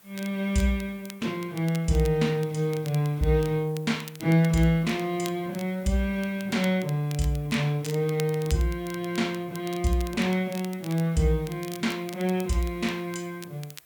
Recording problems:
hiss; slope -1 dB per octave, SNR 27 dB
crackle; vinyl, SNR 19 dB

